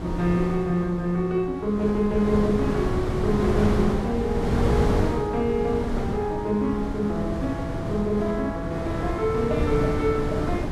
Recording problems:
wind on the microphone; below 380 Hz, SNR 3 dB

